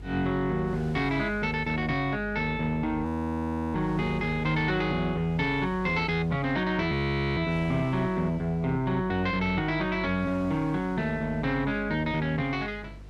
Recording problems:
electrical hum; 50 Hz, harmonics up to 500 Hz, SNR 16 dB
wind noise; below 1.8 kHz, SNR 24 dB
audio freezing; at 3 s for 0.5 s and at 7 s

